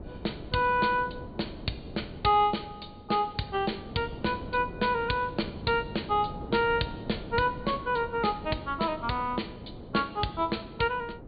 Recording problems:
treble cut off; nothing above 4.7 kHz
wind noise; below 400 Hz, SNR 13 dB

